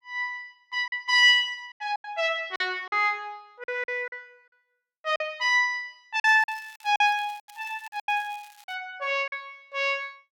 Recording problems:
lost packets; 10% of the sound replaced, filled with silence
crackling; from 6 to 8.5 s; loose cable, SNR 27 dB

